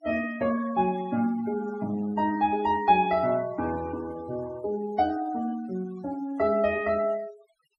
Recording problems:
noise reduction artefacts; signal-to-artefact ratio 20 dB

